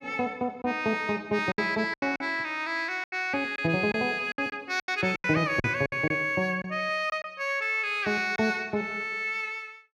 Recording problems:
lost packets; 8% of the sound replaced, filled with silence

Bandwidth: 14.5 kHz